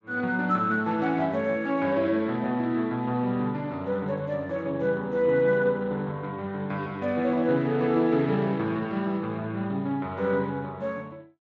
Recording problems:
lossy codec; Speex, log-spectral distance 2 dB

